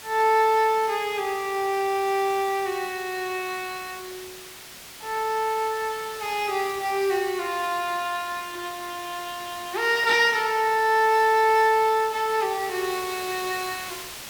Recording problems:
hiss; slope 0 dB per octave, SNR 14 dB

